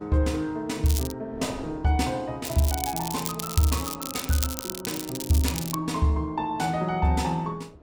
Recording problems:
wind on the microphone; below 510 Hz, SNR 23 dB
crackling; at 1 s and from 2.5 to 6 s; loose cable, SNR 6 dB

